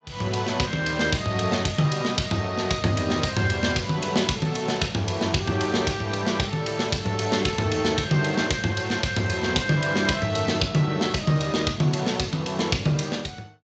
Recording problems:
codec artefacts; Speex, log-spectral distance 5 dB, nothing above 7.3 kHz

